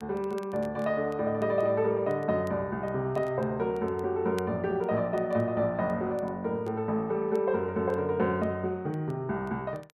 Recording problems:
crackling; vinyl, SNR 30 dB

